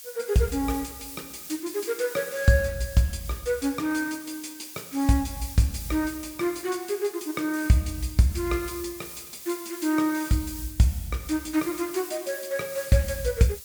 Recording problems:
hiss; slope +4 dB per octave, SNR 13 dB

